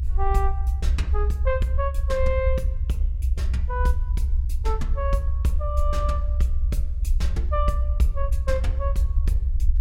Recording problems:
low-frequency rumble; below 66 Hz, SNR -5 dB

